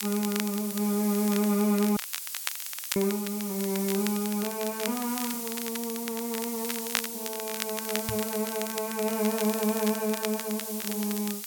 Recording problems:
background hiss; SNR 5 dB
crackle; vinyl, SNR 7 dB
audio cutting out; at 2 s for 1 s
knock on the microphone; at 8 s; peak -3 dB vs average level

